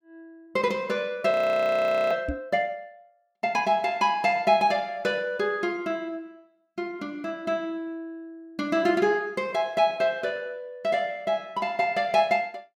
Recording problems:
frozen audio; at 1.5 s for 1 s
microphone bump; at 2.5 s; peak -2 dB vs average level

